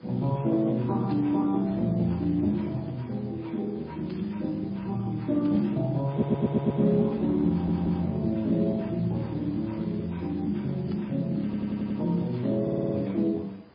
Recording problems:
lossy compression; Speex, then MP3, log-spectral distance 3 dB, nothing above 11.3 kHz
hiss; SNR 24 dB
burst of static; 4 times, first at 1 s; peak -15 dB vs average level
audio stuttering; 4 times, first at 6 s

